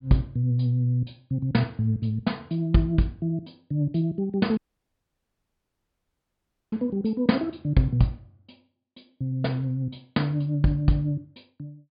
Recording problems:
treble missing; nothing above 4.8 kHz
dropout; at 4.5 s for 2 s

